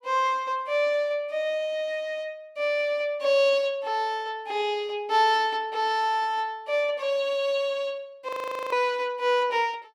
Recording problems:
frozen audio; at 8.5 s

